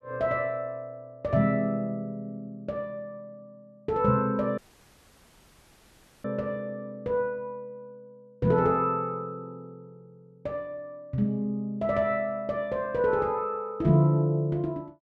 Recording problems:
dropout; at 4.5 s for 1.5 s

